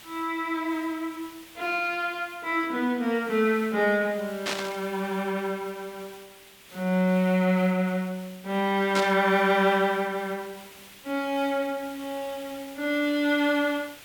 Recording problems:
background hiss; SNR 20 dB
static burst; at 4.5 s and at 9 s; peak +1 dB vs average level

